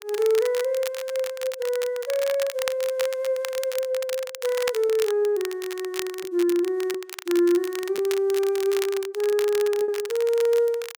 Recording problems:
crackling; vinyl, SNR 12 dB
packet loss; 3% of the sound replaced, filled with repeated pitch periods

